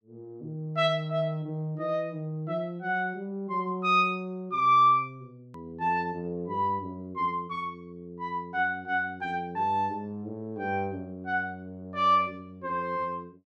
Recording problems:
edit click; at 5.5 s

